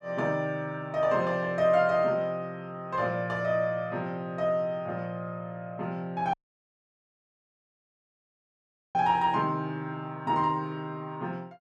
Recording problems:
audio cutting out; at 6.5 s for 2.5 s

